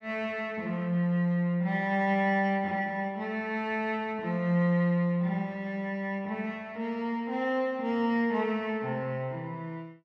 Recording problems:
none

